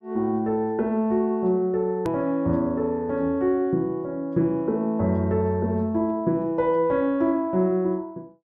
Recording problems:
click at an edit; at 2 s

